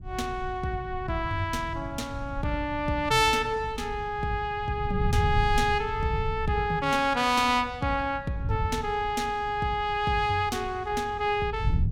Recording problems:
wind noise; below 110 Hz, SNR 9 dB

